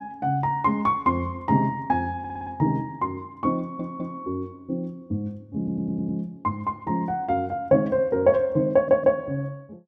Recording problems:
audio stuttering; 4 times, first at 2 s

